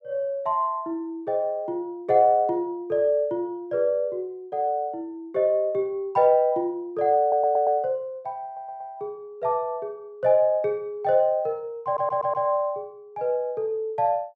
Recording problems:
stutter; at 7 s, at 8.5 s and at 12 s

